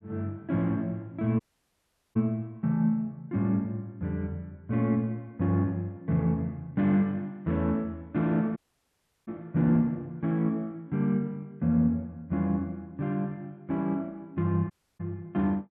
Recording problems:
audio cutting out; at 1.5 s for 1 s, at 8.5 s for 0.5 s and at 15 s

